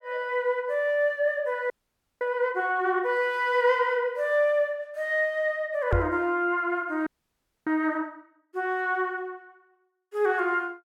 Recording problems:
audio freezing; at 1.5 s for 0.5 s and at 7 s for 0.5 s
knock on the microphone; at 6 s; peak +3 dB vs average level

